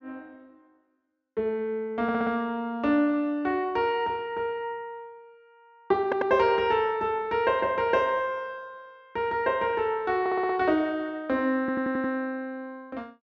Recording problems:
low-pass filter; nothing above 7.4 kHz
audio stuttering; 4 times, first at 2 s

